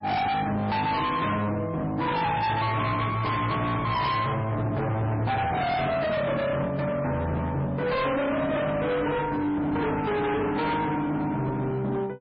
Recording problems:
lossy compression; MP3, log-spectral distance 3 dB, nothing above 5.3 kHz
distortion; hard clipping, signal-to-distortion ratio 6 dB

